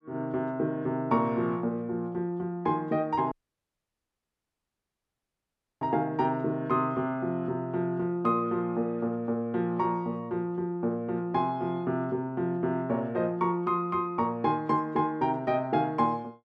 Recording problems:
audio cutting out; at 3.5 s for 2.5 s

